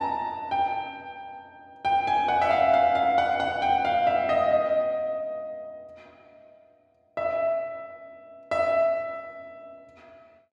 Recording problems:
none

